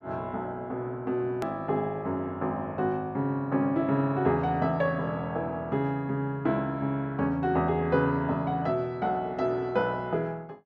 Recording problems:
hard cut with a click; at 1.5 s

